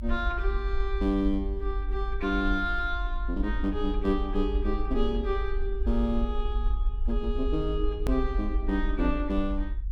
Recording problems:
low-frequency rumble; below 48 Hz, SNR 2 dB
hard cut with a click; at 8 s

